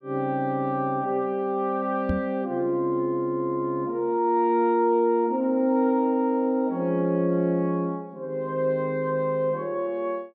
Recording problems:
microphone bump; at 2 s; peak +2 dB vs average level

